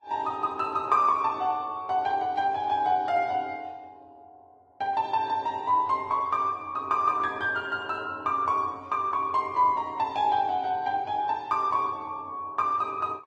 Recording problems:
lossy codec; Vorbis, then Vorbis, log-spectral distance 2 dB

